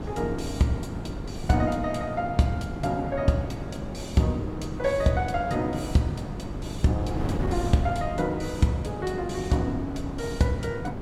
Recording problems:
hum; 50 Hz, harmonics up to 900 Hz, SNR 15 dB
wind on the microphone; below 330 Hz, SNR 8 dB

